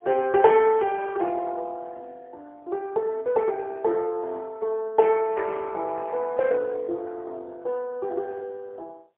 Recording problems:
phone line; 320 Hz to 3.6 kHz, AMR-NB, then MP3

